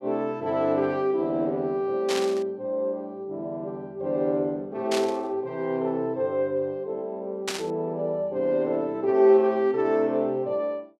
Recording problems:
burst of static; at 2 s, at 5 s and at 7.5 s; peak +1 dB vs average level

